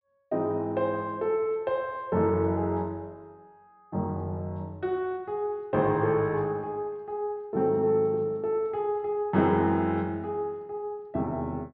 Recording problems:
low-pass filter; nothing above 5.5 kHz

